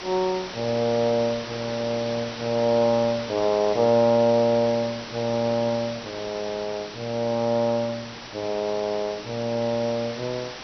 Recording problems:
treble missing; nothing above 6 kHz
hiss; slope -2 dB per octave, SNR 11 dB

